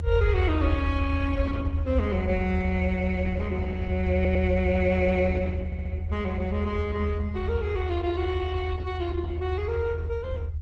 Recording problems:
lossy codec; AAC, then Opus, log-spectral distance 2 dB
low-frequency rumble; below 82 Hz, strongest tone 80 Hz, SNR 0 dB
stutter; at 4 s and at 5.5 s

